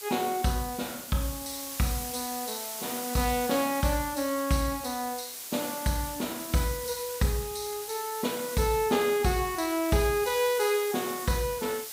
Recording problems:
hiss; slope +1 dB per octave, SNR 8 dB

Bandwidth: 15.5 kHz